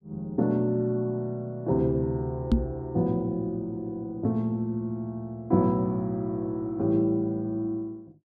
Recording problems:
knock on the microphone; at 2.5 s; peak +9 dB vs average level

